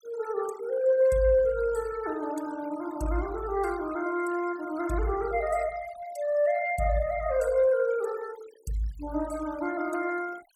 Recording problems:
noise reduction artefacts; signal-to-artefact ratio 20 dB

